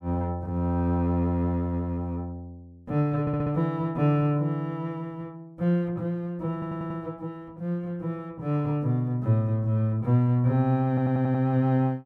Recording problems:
audio stuttering; at 3 s, at 6.5 s and at 11 s

